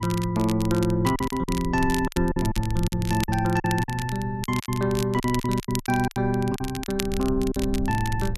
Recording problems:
rumble; below 84 Hz, SNR 12 dB
crackle; vinyl, SNR 12 dB
packet loss; 12% of the sound replaced, filled with silence

